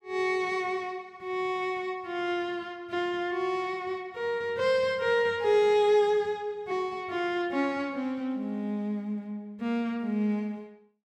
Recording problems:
none

